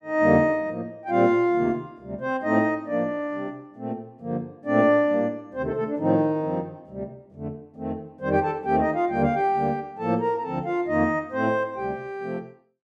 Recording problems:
none

